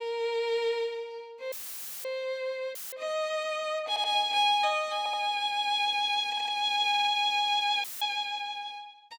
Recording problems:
dropout; at 1.5 s for 0.5 s, at 3 s and at 8 s; filled with static
audio stuttering; 4 times, first at 4 s

